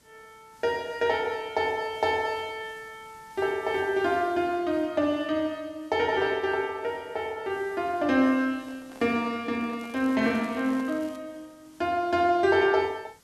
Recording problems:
hiss; slope -2 dB per octave, SNR 29 dB
microphone handling noise; from 8.5 to 11 s; peak -12 dB vs average level
crackle; from 10 to 11 s; loose cable, SNR 27 dB

